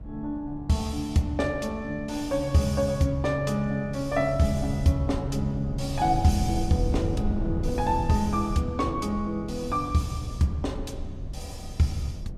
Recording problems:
wind noise; below 140 Hz, SNR 8 dB

